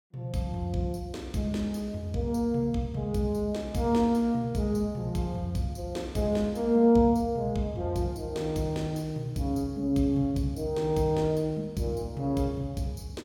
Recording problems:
none

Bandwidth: 17.5 kHz